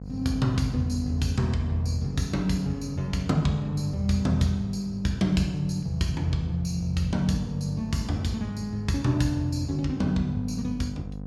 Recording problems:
hum; 50 Hz, harmonics up to 750 Hz, SNR 12 dB

